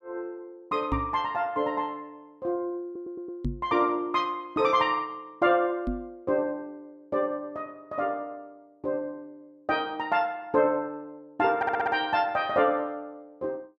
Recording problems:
knock on the microphone; at 1 s, at 3.5 s and at 6 s; peak +3 dB vs average level
audio stuttering; at 3 s and at 12 s

